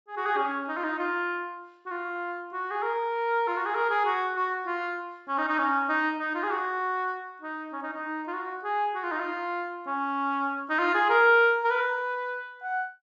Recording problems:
treble missing; nothing above 8 kHz

